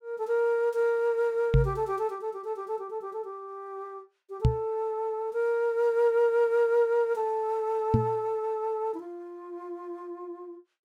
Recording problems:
microphone thump; at 1.5 s, at 4.5 s and at 8 s; peak +8 dB vs average level

